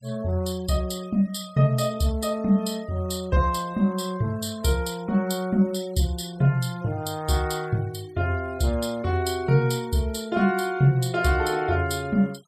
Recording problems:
denoising artefacts; signal-to-artefact ratio 24 dB

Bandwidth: 14.5 kHz